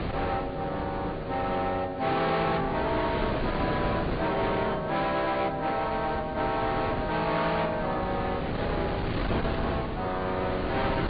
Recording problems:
low-pass filter; nothing above 4.6 kHz
codec artefacts; AAC, then AAC, log-spectral distance 4 dB
distortion; hard clipping, signal-to-distortion ratio 8 dB
wind noise; below 790 Hz, SNR 4 dB

